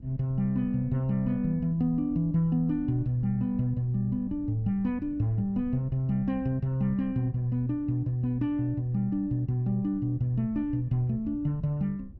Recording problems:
low-frequency rumble; below 120 Hz, SNR 19 dB

